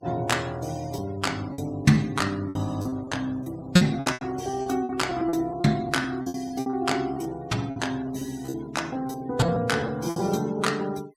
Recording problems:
denoising artefacts; signal-to-artefact ratio 22 dB
packet loss; 12% of the sound replaced, filled with repeated pitch periods

